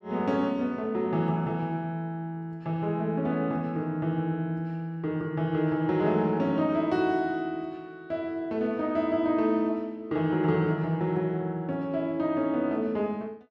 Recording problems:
none

